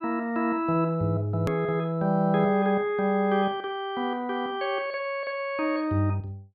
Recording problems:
treble missing; nothing above 4.9 kHz
click at an edit; at 1.5 s

